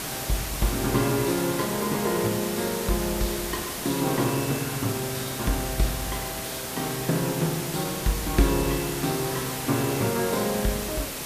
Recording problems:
hum; 60 Hz, harmonics up to 660 Hz, SNR 27 dB
background hiss; slope -2 dB per octave, SNR 4 dB

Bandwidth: 14.5 kHz